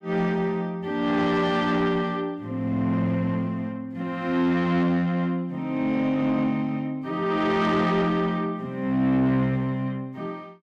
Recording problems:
distortion; soft clipping, signal-to-distortion ratio 12 dB

